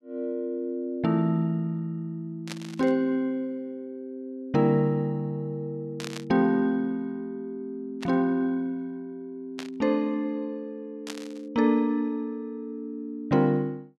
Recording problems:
static burst; 5 times, first at 2.5 s; peak -5 dB vs average level

